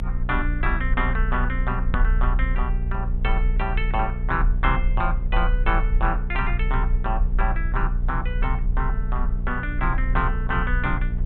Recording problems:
low-pass filter; nothing above 4 kHz
hum; 60 Hz, harmonics up to 660 Hz, SNR 4 dB
low-frequency rumble; below 38 Hz, strongest tone 34 Hz, SNR -1 dB
edit click; at 2 s

